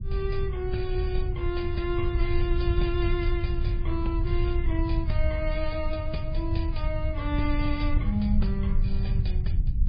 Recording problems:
lossy compression; MP3, log-spectral distance 2 dB, nothing above 4.6 kHz
rumble; below 82 Hz, SNR -3 dB

